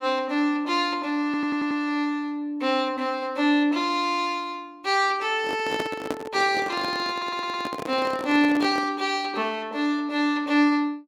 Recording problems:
stutter; at 1.5 s and at 7 s
handling noise; from 5.5 to 9 s; peak 0 dB vs average level

